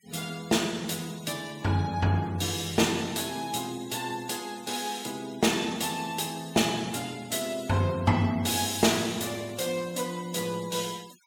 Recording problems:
noise reduction artefacts; signal-to-artefact ratio 20 dB

